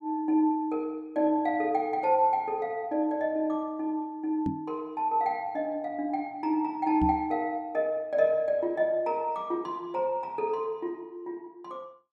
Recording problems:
knock on the microphone; at 4.5 s and at 7 s; peak +1 dB vs average level

